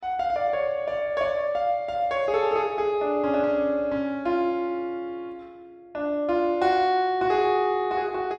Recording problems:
none

